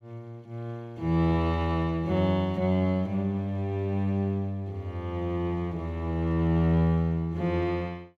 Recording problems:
none

